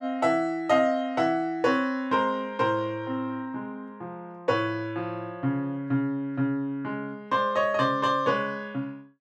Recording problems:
none

